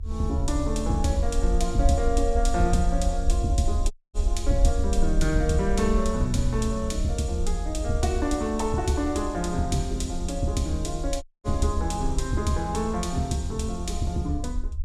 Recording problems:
low-frequency rumble; below 56 Hz, SNR 3 dB
dropout; at 4 s and at 11 s

